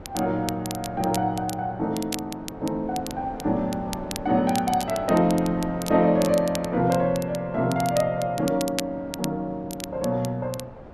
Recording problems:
wind noise; below 680 Hz, SNR 16 dB
crackling; vinyl, SNR 13 dB

